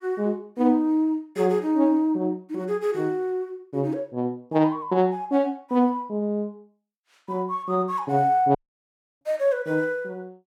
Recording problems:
audio cutting out; at 8.5 s for 0.5 s

